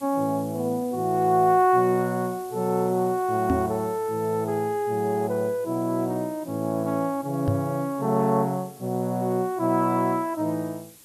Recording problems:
hiss; SNR 22 dB
knock on the microphone; at 3.5 s and at 7.5 s; peak +4 dB vs average level

